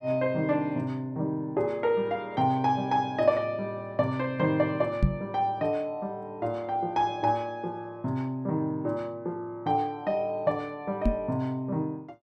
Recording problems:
microphone thump; at 5 s and at 11 s; peak +9 dB vs average level

